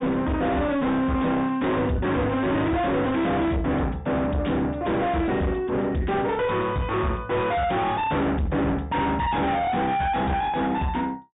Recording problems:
treble cut off; nothing above 3.7 kHz
distorted audio; soft clipping, signal-to-distortion ratio 6 dB

